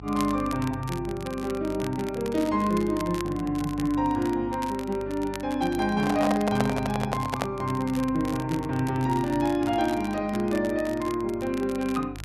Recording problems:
electrical hum; 50 Hz, harmonics up to 500 Hz, SNR 16 dB
crackling; vinyl, SNR 17 dB
handling noise; from 6 to 7.5 s; peak +3 dB vs average level

